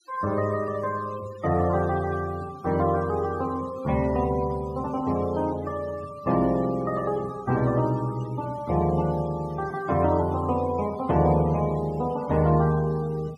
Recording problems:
denoising artefacts; signal-to-artefact ratio 21 dB

